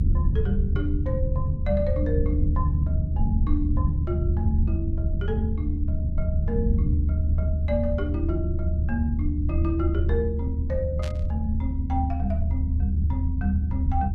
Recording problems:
low-frequency rumble; below 82 Hz, strongest tone 76 Hz, SNR -6 dB
burst of static; at 11 s; peak -4 dB vs average level

